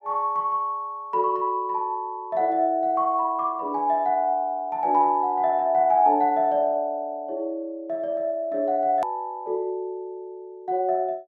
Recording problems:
edit click; at 9 s

